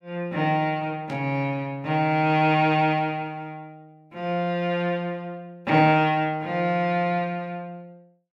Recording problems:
burst of static; at 1 s; peak -15 dB vs average level

